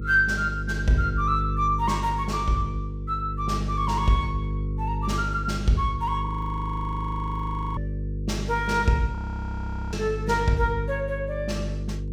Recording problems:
hum; 50 Hz, harmonics up to 500 Hz, SNR 4 dB
audio freezing; at 6.5 s for 1.5 s and at 9 s for 1 s

